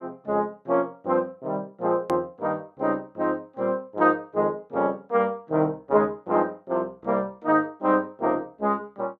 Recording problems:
hard cut with a click; at 2 s

